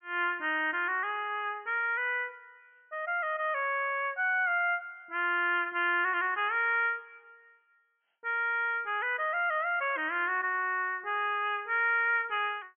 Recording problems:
treble cut off; nothing above 3.2 kHz

